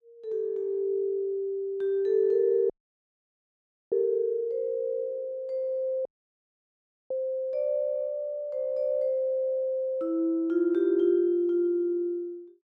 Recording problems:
audio cutting out; at 2.5 s for 1 s and at 6 s for 1 s

